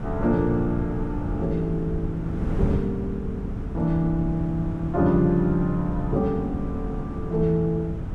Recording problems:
wind noise; below 190 Hz, SNR 6 dB

